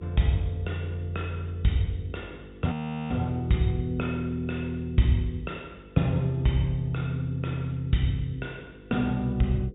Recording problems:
treble cut off; nothing above 4 kHz
hum; 50 Hz, harmonics up to 500 Hz, SNR 20 dB
audio freezing; at 2.5 s

